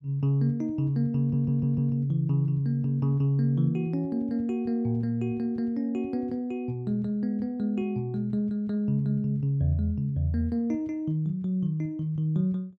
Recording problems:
stutter; at 1 s

